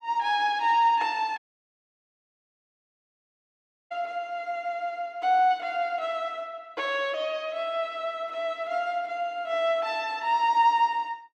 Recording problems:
dropout; at 1.5 s for 2.5 s

